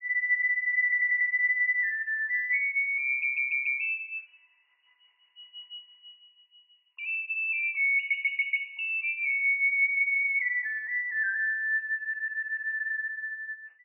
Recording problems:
stutter; 4 times, first at 1 s

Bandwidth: 3 kHz